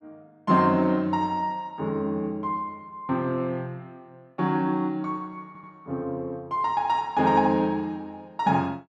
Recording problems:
stutter; at 5.5 s

